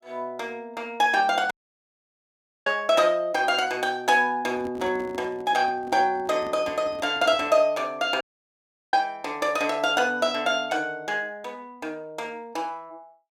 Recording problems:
dropout; at 1.5 s for 1 s and at 8 s for 0.5 s
microphone handling noise; from 4.5 to 7.5 s; peak -10 dB vs average level

